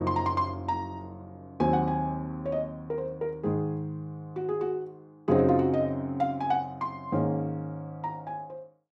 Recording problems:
none

